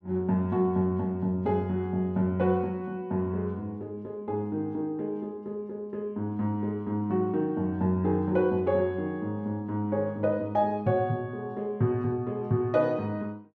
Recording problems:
none

